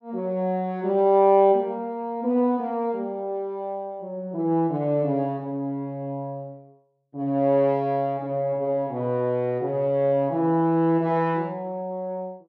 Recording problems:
none

